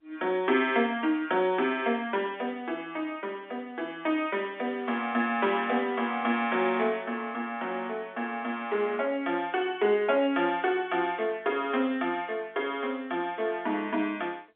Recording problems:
telephone audio; 240 Hz to 3.6 kHz, G.711

